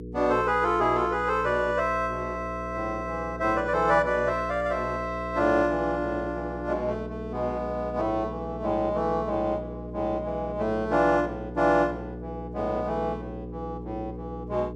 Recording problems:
hum; 60 Hz, harmonics up to 480 Hz, SNR 11 dB

